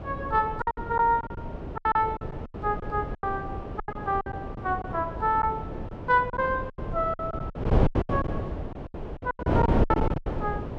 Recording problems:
wind noise; below 440 Hz, SNR 3 dB
packet loss; 15% of the sound replaced, filled with silence

